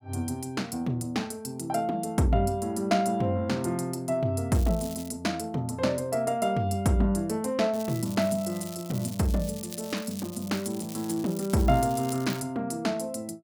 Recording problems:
crackling; at 4.5 s and from 7.5 to 12 s; loose cable, SNR 15 dB

